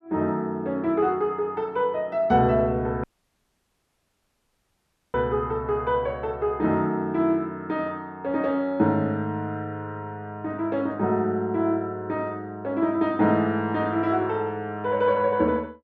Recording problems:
dropout; at 3 s for 2 s

